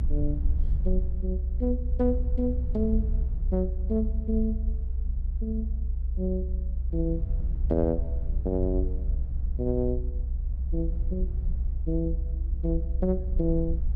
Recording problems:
rumble; below 64 Hz, SNR -1 dB

